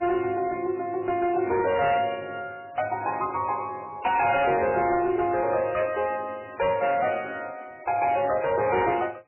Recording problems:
lossy compression; MP3, log-spectral distance 4 dB, nothing above 2.5 kHz
distortion; hard clipping, signal-to-distortion ratio 11 dB

